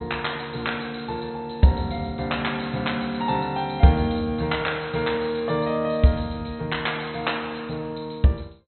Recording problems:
treble missing; nothing above 4.1 kHz

